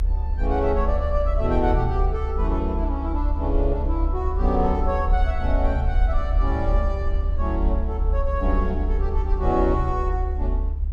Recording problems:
rumble; below 70 Hz, strongest tone 38 Hz, SNR -1 dB

